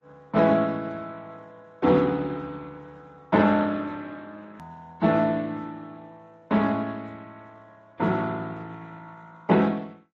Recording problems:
lossy codec; Speex, then AAC, log-spectral distance 3 dB
click at an edit; at 4.5 s

